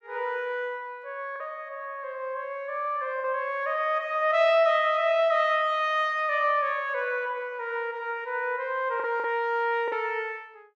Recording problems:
packet loss; 1.9% of the sound replaced, filled with the last packet

